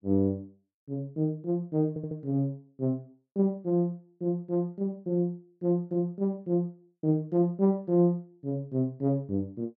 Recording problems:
audio stuttering; at 2 s

